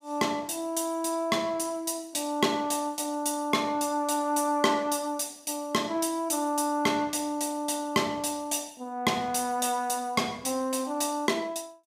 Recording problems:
none

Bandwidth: 15.5 kHz